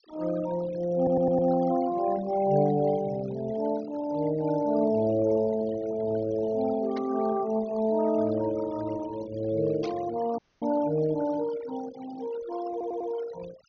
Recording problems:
low-pass filter; nothing above 6.5 kHz
noise reduction artefacts; signal-to-artefact ratio 18 dB
stutter; at 1 s and at 13 s
static burst; at 7 s and at 10 s; peak -12 dB vs average level
dropout; at 10 s

